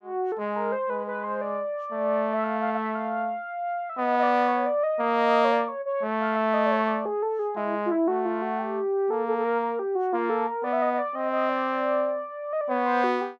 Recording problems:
none

